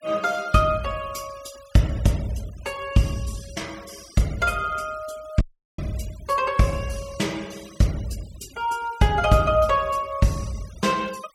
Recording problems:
denoising artefacts; signal-to-artefact ratio 22 dB
dropout; at 5.5 s

